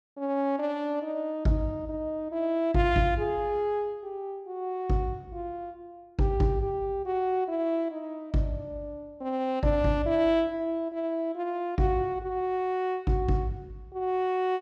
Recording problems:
none

